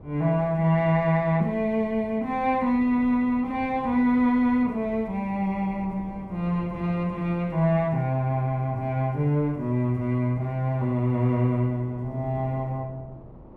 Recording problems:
wind noise; below 410 Hz, SNR 21 dB

